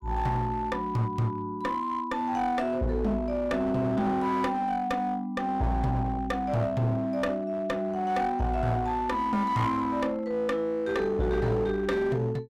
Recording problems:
distorted audio; hard clipping, uneven, signal-to-distortion ratio 10 dB

